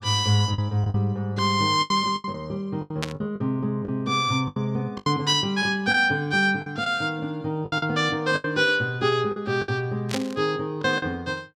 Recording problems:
packet loss; 9% of the sound replaced, filled with the last packet
burst of static; at 3 s and at 10 s; peak -1 dB vs average level

